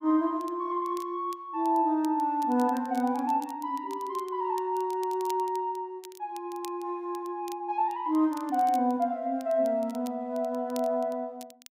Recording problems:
crackling; vinyl, SNR 23 dB

